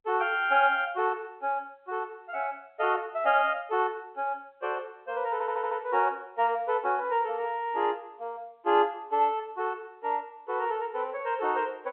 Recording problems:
phone line; 300 Hz to 3.3 kHz, G.711
stutter; at 5.5 s

